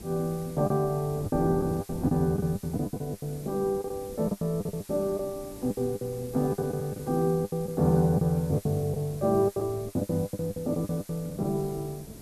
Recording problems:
background hiss; slope 0 dB per octave, SNR 20 dB
wind noise; below 340 Hz, SNR 15 dB
packet loss; 15% of the sound replaced, filled with the last packet

